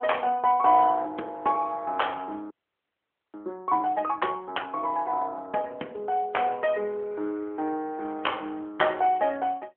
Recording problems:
telephone audio; 260 Hz to 3.3 kHz, AMR-NB
frozen audio; at 2.5 s for 1 s

